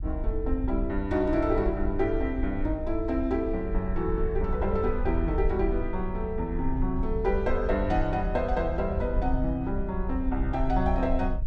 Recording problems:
low-frequency rumble; below 60 Hz, SNR 4 dB

